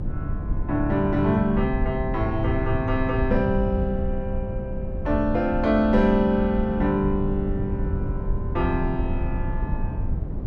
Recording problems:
rumble; below 120 Hz, SNR 6 dB
wind on the microphone; below 110 Hz, SNR 10 dB

